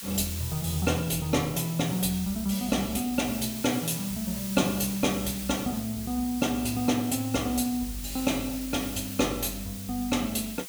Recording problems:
hiss; slope +3 dB per octave, SNR 9 dB

